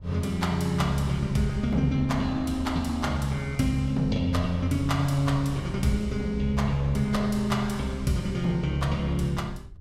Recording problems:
wind noise; below 110 Hz, SNR 15 dB

